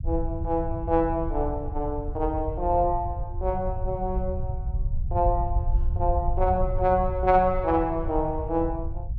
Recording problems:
low-frequency rumble; below 80 Hz, SNR 5 dB

